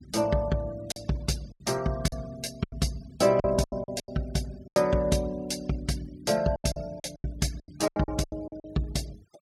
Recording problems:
noise reduction artefacts; signal-to-artefact ratio 22 dB
lost packets; 13% of the sound replaced, filled with silence

